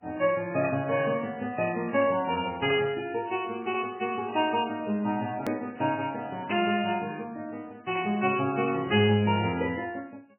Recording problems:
codec artefacts; MP3, log-spectral distance 4 dB, nothing above 2.6 kHz
edit click; at 5.5 s

